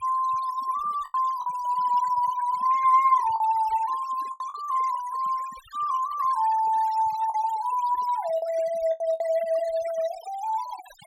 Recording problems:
noise reduction artefacts; signal-to-artefact ratio 21 dB
packet loss; 5% of the sound replaced, filled with the last packet

